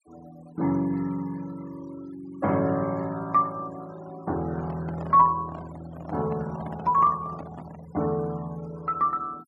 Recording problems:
noise reduction artefacts; signal-to-artefact ratio 22 dB
microphone handling noise; from 4.5 to 8 s; peak -9 dB vs average level

